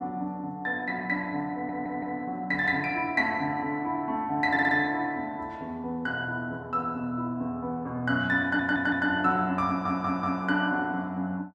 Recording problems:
stutter; 4 times, first at 1.5 s

